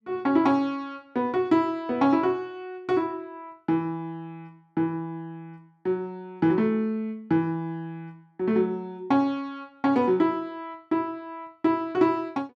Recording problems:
none

